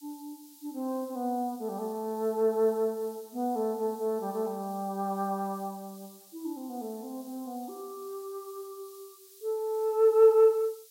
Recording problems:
background hiss; SNR 23 dB

